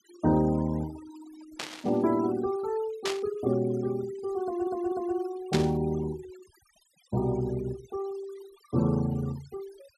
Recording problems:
noise reduction artefacts; signal-to-artefact ratio 19 dB
burst of static; at 1.5 s, at 3 s and at 5.5 s; peak +2 dB vs average level
audio stuttering; at 4.5 s

